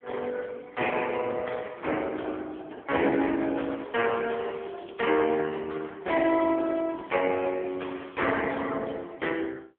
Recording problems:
telephone audio; 260 Hz to 3.3 kHz, AMR-NB
crackle; from 3.5 to 5.5 s, at 6 s and from 6.5 to 8.5 s; loose cable, SNR 27 dB

